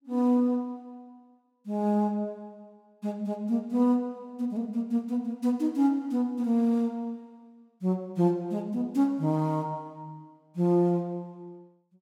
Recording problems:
none

